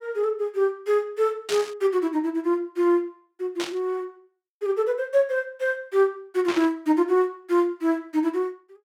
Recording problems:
burst of static; at 1.5 s, at 3.5 s and at 6.5 s; peak -3 dB vs average level

